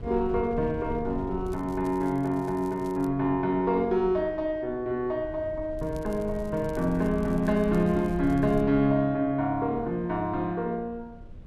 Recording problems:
wind noise; below 120 Hz, SNR 15 dB
crackle; from 1.5 to 3 s and from 6 to 8.5 s; loose cable, SNR 28 dB

